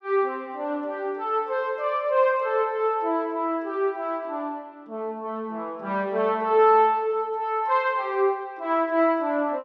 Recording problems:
none

